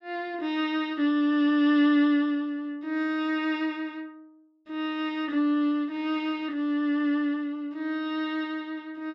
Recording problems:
none

